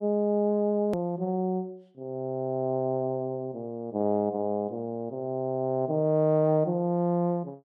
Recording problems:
edit click; at 1 s

